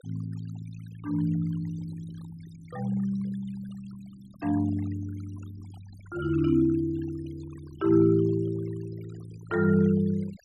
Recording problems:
denoising artefacts; signal-to-artefact ratio 23 dB

